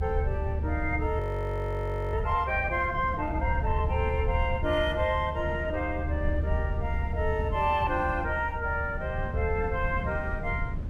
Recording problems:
rumble; below 82 Hz, SNR 3 dB
wind on the microphone; below 240 Hz, SNR 11 dB
audio freezing; at 1 s for 1 s

